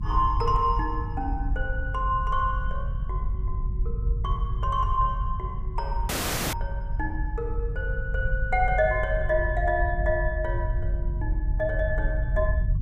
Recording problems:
rumble; below 74 Hz, strongest tone 46 Hz, SNR 1 dB
audio cutting out; at 6 s

